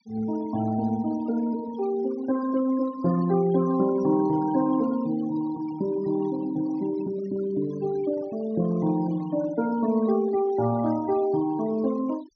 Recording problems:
treble missing; nothing above 6.2 kHz
denoising artefacts; signal-to-artefact ratio 19 dB

